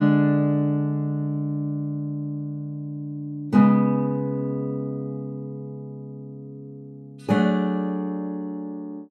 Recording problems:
none

